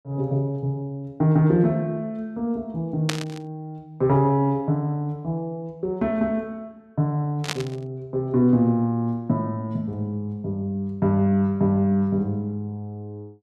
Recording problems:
burst of static; at 3 s and at 7.5 s; peak +2 dB vs average level

